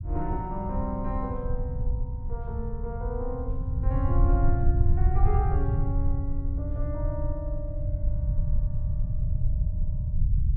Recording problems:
low-frequency rumble; below 88 Hz, SNR -7 dB

